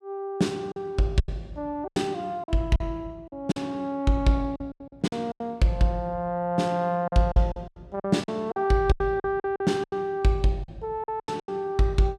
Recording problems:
lost packets; 12% of the sound replaced, filled with silence

